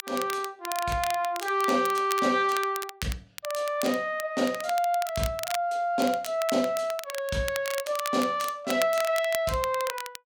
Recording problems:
crackling; vinyl, SNR 10 dB

